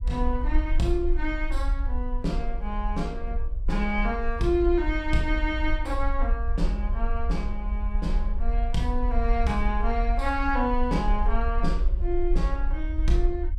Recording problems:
low-frequency rumble; below 50 Hz, SNR 0 dB

